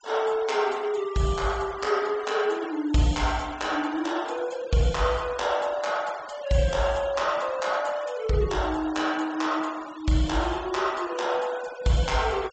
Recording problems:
low-pass filter; nothing above 8 kHz
denoising artefacts; signal-to-artefact ratio 19 dB

